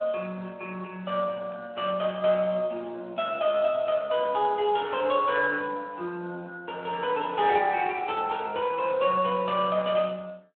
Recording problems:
phone line; 300 Hz to 3.3 kHz, Speex

